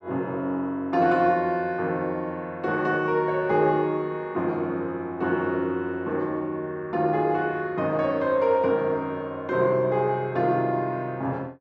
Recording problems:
none

